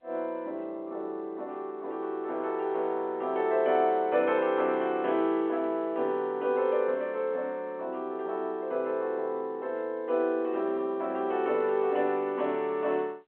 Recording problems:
telephone audio; 300 Hz to 3.6 kHz, G.711

